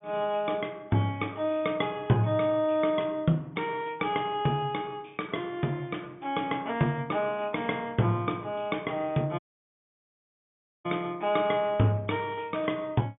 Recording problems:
low-pass filter; nothing above 3.6 kHz
dropout; at 9.5 s for 1.5 s

